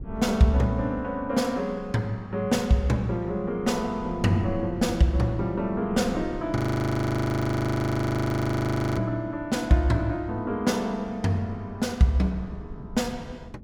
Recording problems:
wind noise; below 180 Hz, SNR 17 dB
audio freezing; at 6.5 s for 2.5 s

